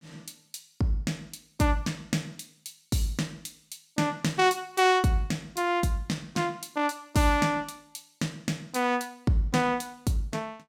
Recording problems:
none

